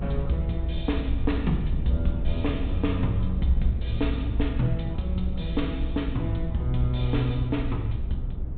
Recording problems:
treble cut off; nothing above 4 kHz
rumble; below 72 Hz, SNR 2 dB

